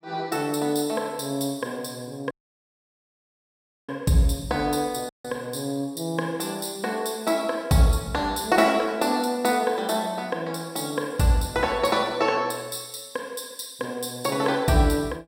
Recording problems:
dropout; at 2.5 s for 1.5 s and at 5 s

